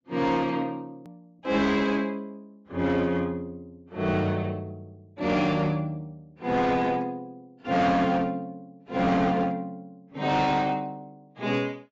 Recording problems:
lossy codec; AAC, log-spectral distance 2 dB
distorted audio; hard clipping, signal-to-distortion ratio 11 dB
click at an edit; at 1 s

